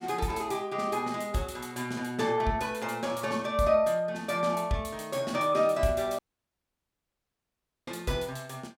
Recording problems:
dropout; at 6 s for 1.5 s

